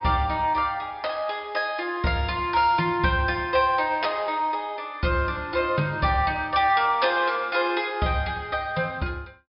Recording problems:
treble missing; nothing above 5.5 kHz

